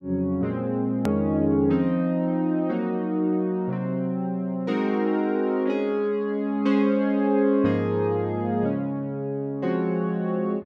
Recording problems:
hard cut with a click; at 1 s

